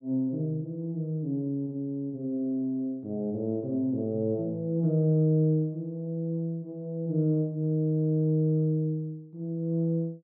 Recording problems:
none

